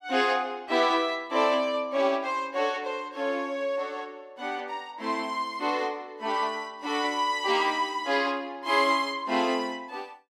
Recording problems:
none

